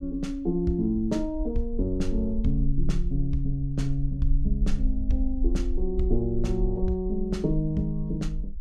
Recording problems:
low-frequency rumble; below 46 Hz, strongest tone 18 Hz, SNR 4 dB

